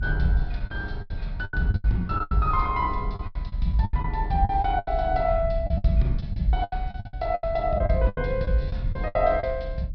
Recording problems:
treble missing; nothing above 5.5 kHz
low-frequency rumble; below 78 Hz, strongest tone 38 Hz, SNR 6 dB
lost packets; 16% of the sound replaced, filled with the last packet

